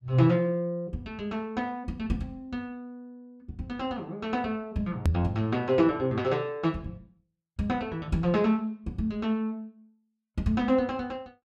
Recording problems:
hard cut with a click; at 5 s

